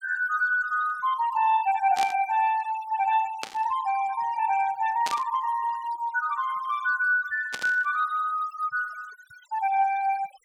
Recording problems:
denoising artefacts; signal-to-artefact ratio 20 dB
static burst; 4 times, first at 2 s; peak -2 dB vs average level

